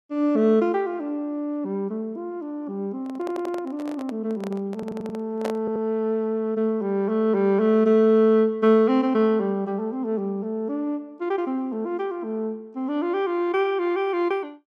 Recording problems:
handling noise; from 3 to 6 s; peak -2 dB vs average level
stutter; at 3 s, at 4.5 s and at 5.5 s

